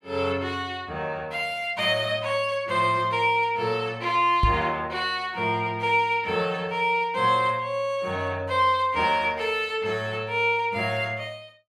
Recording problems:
microphone bump; at 4.5 s; peak +4 dB vs average level

